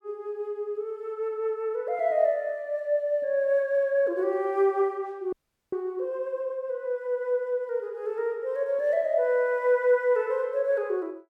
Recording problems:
frozen audio; at 5.5 s

